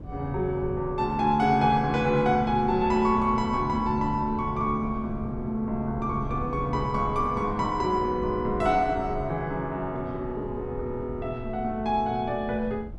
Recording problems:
wind on the microphone; below 150 Hz, SNR 13 dB

